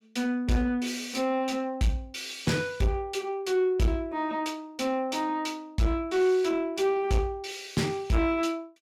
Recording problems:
distorted audio; soft clipping, signal-to-distortion ratio 10 dB

